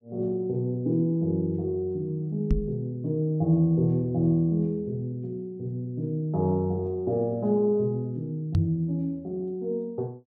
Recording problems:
microphone thump; at 2.5 s and at 8.5 s; peak +6 dB vs average level

